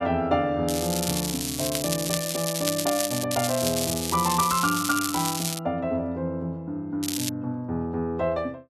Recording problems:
crackle; from 0.5 to 3 s, from 3.5 to 5.5 s and at 7 s; loose cable, SNR 2 dB

